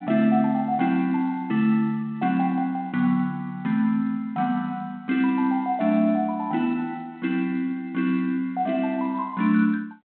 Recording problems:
phone line; 190 Hz to 3.9 kHz, G.726

